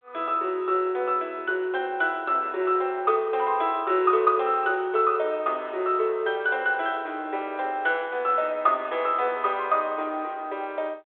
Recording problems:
phone line; 320 Hz to 3.8 kHz, G.726

